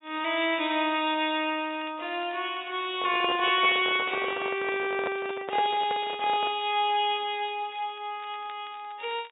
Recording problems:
treble missing; nothing above 4 kHz
crackling; vinyl, SNR 27 dB
handling noise; from 3 to 6.5 s; peak -2 dB vs average level

